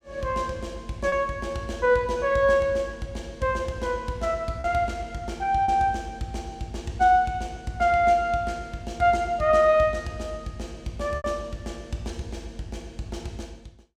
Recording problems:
lost packets; 1.5% of the sound replaced, filled with repeated pitch periods

